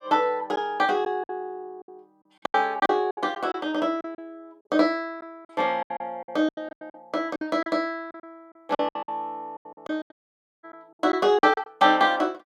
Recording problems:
packet loss; 14% of the sound replaced, filled with silence
audio cutting out; at 10 s for 0.5 s

